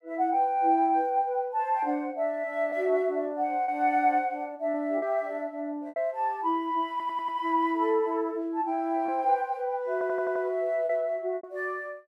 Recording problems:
packet loss; 3% of the sound replaced, filled with repeated pitch periods
audio stuttering; at 7 s and at 10 s

